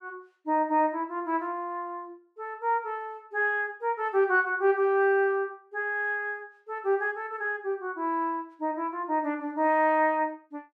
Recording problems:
none

